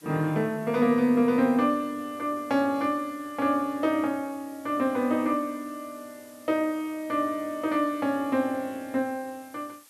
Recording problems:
hiss; SNR 25 dB

